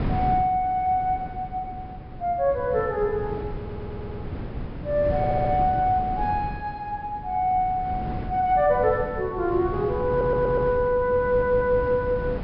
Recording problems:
low-pass filter; nothing above 5.3 kHz
wind on the microphone; below 270 Hz, SNR 10 dB
audio stuttering; 4 times, first at 3.5 s

